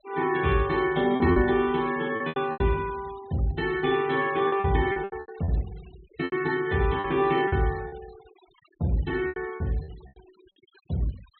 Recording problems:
low-pass filter; nothing above 4.1 kHz
denoising artefacts; signal-to-artefact ratio 22 dB
packet loss; 10% of the sound replaced, filled with repeated pitch periods

